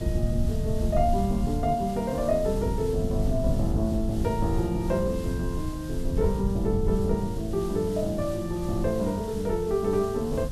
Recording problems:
hiss; SNR 18 dB
low-frequency rumble; below 110 Hz, SNR 4 dB

